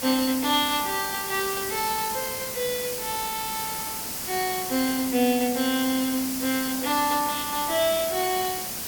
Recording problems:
hiss; SNR 3 dB

